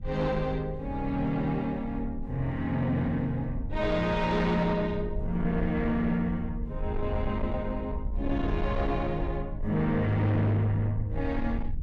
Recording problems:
distorted audio; soft clipping, signal-to-distortion ratio 11 dB
low-frequency rumble; below 86 Hz, SNR 8 dB

